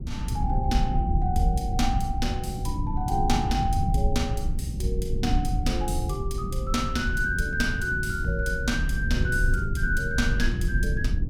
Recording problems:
low-frequency rumble; below 110 Hz, SNR 0 dB

